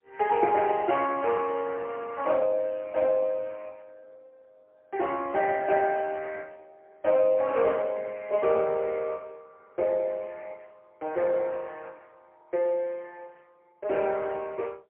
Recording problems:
phone line; 340 Hz to 3.2 kHz, AMR-NB, then MP3

